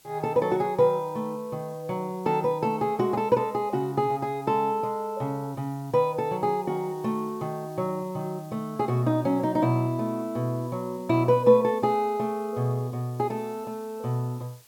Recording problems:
background hiss; slope 0 dB per octave, SNR 27 dB

